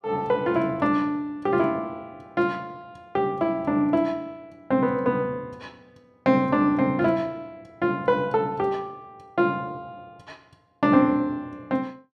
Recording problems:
none

